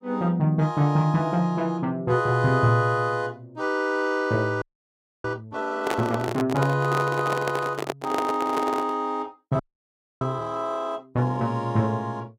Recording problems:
audio freezing; at 4.5 s for 0.5 s and at 9.5 s for 0.5 s
microphone handling noise; from 6 to 9 s; peak +2 dB vs average level

